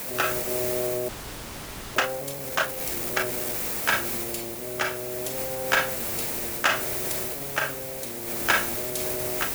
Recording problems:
hiss; slope -3 dB per octave, SNR 0 dB
audio freezing; at 1 s for 1 s

